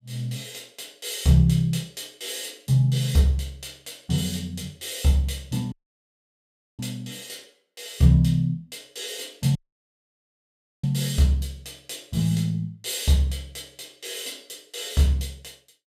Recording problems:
dropout; at 5.5 s for 1 s and at 9.5 s for 1.5 s

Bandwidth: 15.5 kHz